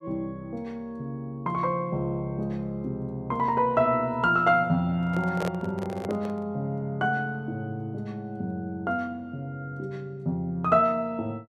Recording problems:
microphone handling noise; from 5 to 6.5 s; peak -1 dB vs average level

